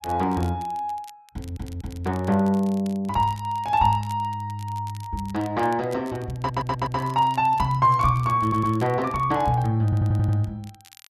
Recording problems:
crackle; vinyl, SNR 25 dB
stutter; 4 times, first at 1.5 s

